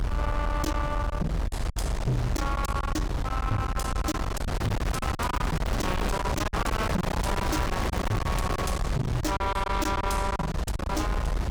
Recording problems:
distorted audio; soft clipping, signal-to-distortion ratio 7 dB
low-frequency rumble; below 100 Hz, strongest tone 44 Hz, SNR 2 dB
wind noise; below 970 Hz, SNR 2 dB
lost packets; 13% of the sound replaced, filled with silence
crackle; from 4.5 to 6 s, from 6.5 to 8.5 s and at 8.5 s; loose cable, SNR 11 dB

